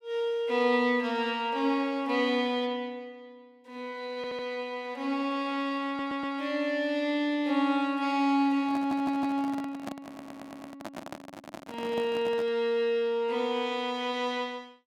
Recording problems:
stutter; 4 times, first at 4 s
microphone handling noise; from 8.5 to 13 s; peak -5 dB vs average level

